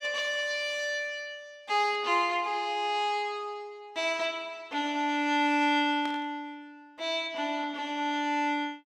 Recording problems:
static burst; at 6 s; peak -9 dB vs average level

